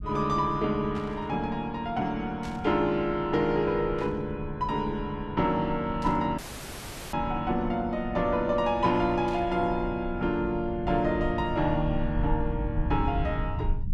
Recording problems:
low-frequency rumble; below 98 Hz, SNR 10 dB
static burst; 5 times, first at 1 s; peak -13 dB vs average level
dropout; at 6.5 s for 1 s

